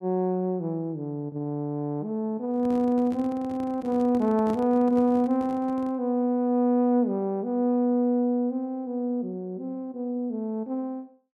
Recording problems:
microphone handling noise; from 2.5 to 6 s; peak -6 dB vs average level

